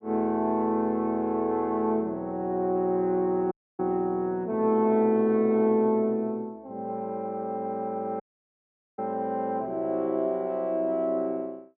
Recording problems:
audio cutting out; at 3.5 s and at 8 s for 1 s

